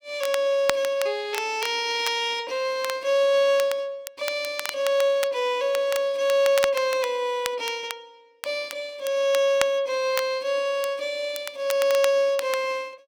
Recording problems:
crackle; vinyl, SNR 12 dB

